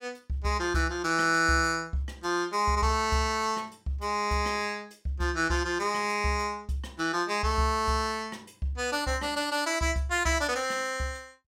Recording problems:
none

